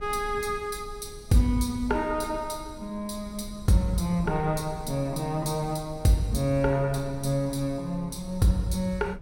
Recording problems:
wind on the microphone; below 86 Hz, SNR 17 dB

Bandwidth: 17 kHz